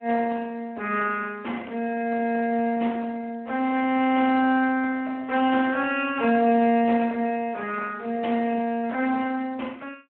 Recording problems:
phone line; 240 Hz to 3.1 kHz, Speex

